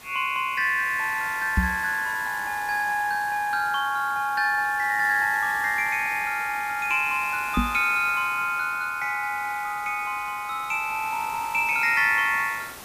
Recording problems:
background hiss; slope -2 dB per octave, SNR 17 dB
knock on the microphone; at 1.5 s and at 7.5 s; peak +4 dB vs average level

